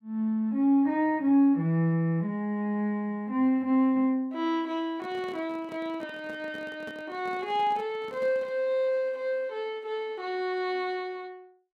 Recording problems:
handling noise; from 5 to 8.5 s; peak -11 dB vs average level

